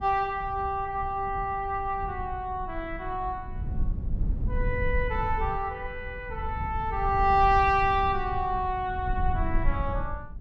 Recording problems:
low-frequency rumble; below 80 Hz, SNR 7 dB

